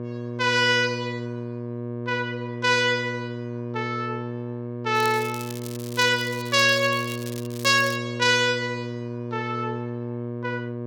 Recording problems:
electrical hum; 60 Hz, harmonics up to 1.2 kHz, SNR 9 dB
crackling; from 5 to 8 s; loose cable, SNR 17 dB

